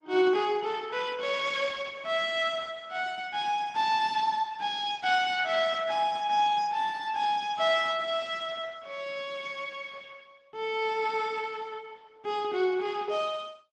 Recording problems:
codec artefacts; Opus, log-spectral distance 4 dB

